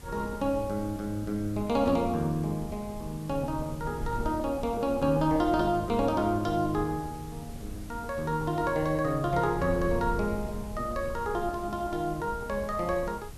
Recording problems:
background hiss; slope -1 dB per octave, SNR 22 dB
wind on the microphone; below 110 Hz, SNR 13 dB

